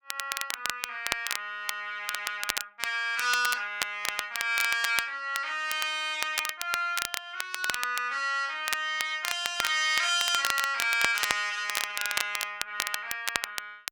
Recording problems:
crackle; vinyl, SNR 4 dB

